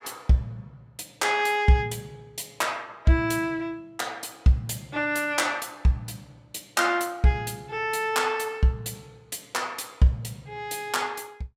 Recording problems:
none

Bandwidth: 16 kHz